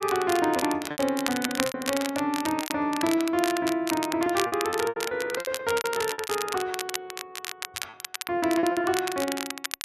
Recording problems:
crackle; vinyl, SNR 7 dB
lost packets; 13% of the sound replaced, filled with repeated pitch periods

